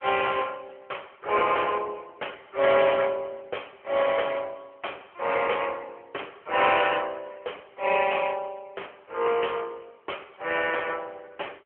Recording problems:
telephone audio; 340 Hz to 3.3 kHz, AMR-NB

